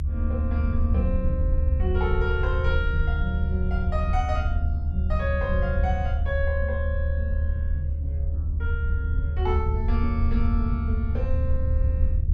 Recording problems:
rumble; below 76 Hz, SNR -5 dB

